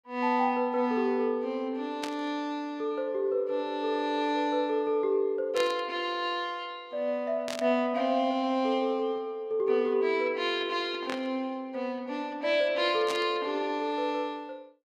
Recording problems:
burst of static; 5 times, first at 2 s; peak -3 dB vs average level

